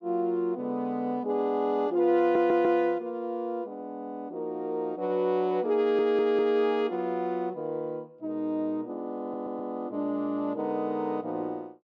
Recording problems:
audio stuttering; at 2 s, at 6 s and at 9 s

